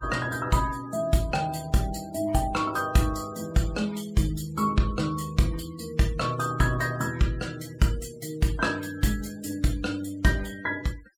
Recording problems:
noise reduction artefacts; signal-to-artefact ratio 21 dB

